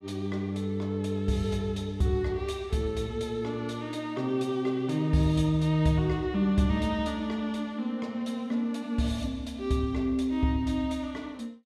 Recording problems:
none

